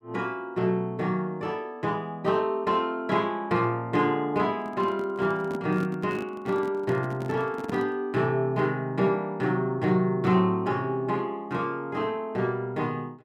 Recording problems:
handling noise; from 4.5 to 8 s; peak -3 dB vs average level

